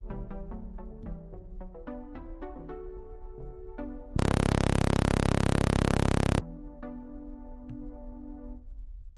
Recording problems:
lossy compression; MP3, then Opus, log-spectral distance 2 dB, nothing above 11 kHz
low-frequency rumble; below 510 Hz, SNR -19 dB
knock on the microphone; at 1 s and at 7.5 s; peak +6 dB vs average level
audio freezing; at 4 s for 2 s

